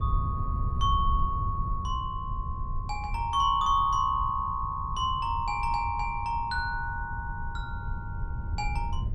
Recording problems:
wind noise; below 96 Hz, SNR 5 dB

